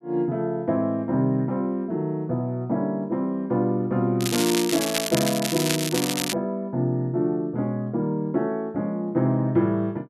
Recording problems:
crackle; from 4 to 6.5 s; loose cable, SNR 3 dB

